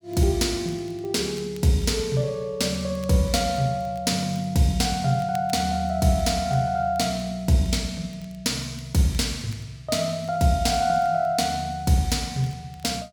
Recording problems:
crackle; vinyl, SNR 30 dB

